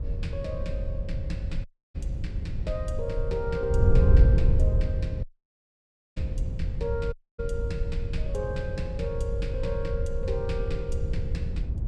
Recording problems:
wind noise; below 90 Hz, SNR -6 dB
audio cutting out; at 1.5 s, at 5 s for 1 s and at 7 s

